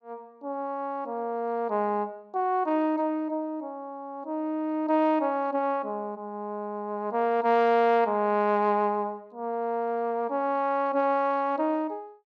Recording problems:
none

